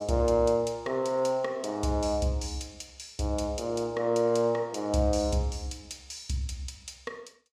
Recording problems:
none

